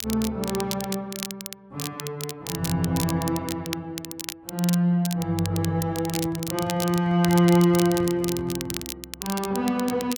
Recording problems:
crackling; vinyl, SNR 10 dB
handling noise; from 6 to 9 s; peak -8 dB vs average level

